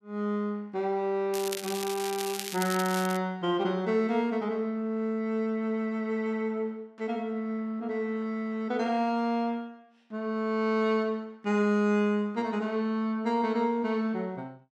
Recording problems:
crackle; from 1.5 to 3 s; loose cable, SNR 8 dB

